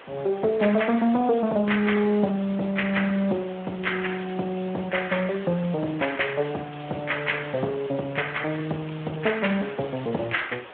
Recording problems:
phone line; 260 Hz to 3.4 kHz, Speex
background hiss; SNR 18 dB

